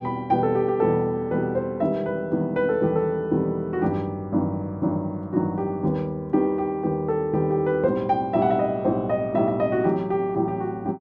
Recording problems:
none

